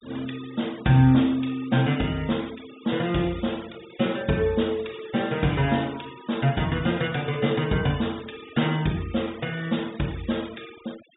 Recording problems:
low-pass filter; nothing above 4 kHz
denoising artefacts; signal-to-artefact ratio 20 dB

